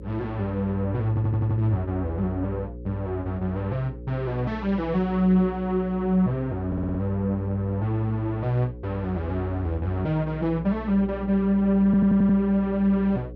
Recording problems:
electrical hum; 60 Hz, harmonics up to 540 Hz, SNR 14 dB
audio stuttering; at 1 s, at 6.5 s and at 12 s

